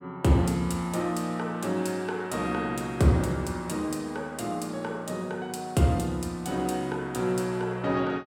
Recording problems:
none

